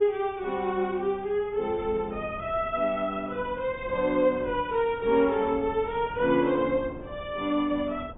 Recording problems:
low-pass filter; nothing above 3.7 kHz
wind noise; below 390 Hz, SNR 19 dB

